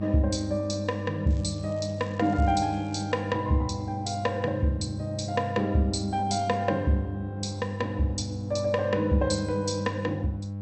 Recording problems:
codec artefacts; MP2, log-spectral distance 3 dB, nothing above 8 kHz
electrical hum; 50 Hz, harmonics up to 600 Hz, SNR 7 dB
crackling; from 1.5 to 3 s; loose cable, SNR 27 dB

